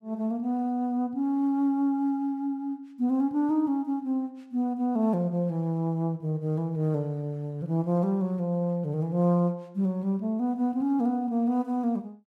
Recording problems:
none

